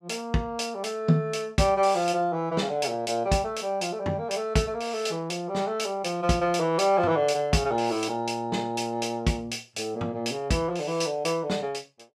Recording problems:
none

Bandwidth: 14.5 kHz